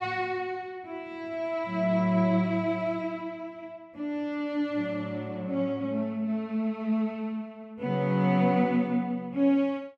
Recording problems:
none

